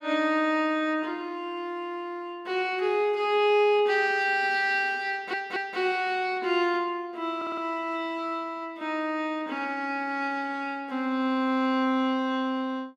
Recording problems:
audio stuttering; at 5 s and at 7.5 s

